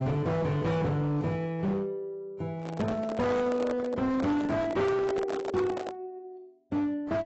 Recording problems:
lossy codec; AAC, log-spectral distance 2 dB, nothing above 7.6 kHz
distortion; hard clipping, uneven, signal-to-distortion ratio 8 dB
handling noise; from 2.5 to 6 s; peak -1 dB vs average level

